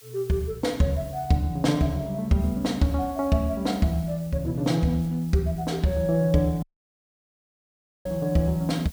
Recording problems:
hiss; slope +2 dB per octave, SNR 24 dB
audio cutting out; at 6.5 s for 1.5 s

